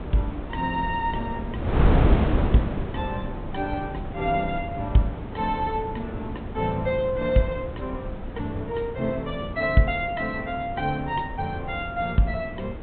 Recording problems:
treble missing; nothing above 4 kHz
wind on the microphone; below 330 Hz, SNR 3 dB

